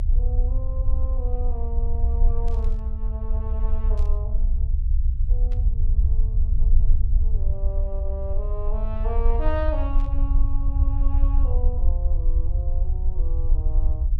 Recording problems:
rumble; below 60 Hz, strongest tone 22 Hz, SNR -12 dB
burst of static; 4 times, first at 2.5 s; peak -9 dB vs average level

